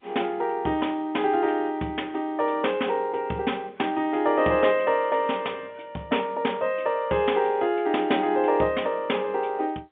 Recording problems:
telephone audio; 220 Hz to 3.5 kHz, G.711

